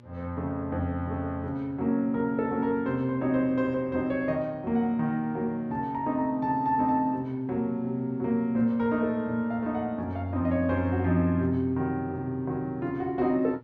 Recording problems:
hum; 60 Hz, harmonics up to 1.4 kHz, SNR 23 dB

